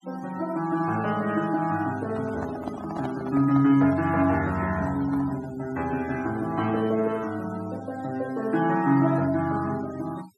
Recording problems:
noise reduction artefacts; signal-to-artefact ratio 20 dB
microphone handling noise; from 2 to 5.5 s; peak -5 dB vs average level

